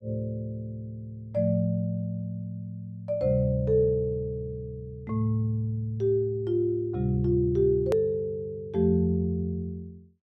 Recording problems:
hard cut with a click; at 8 s

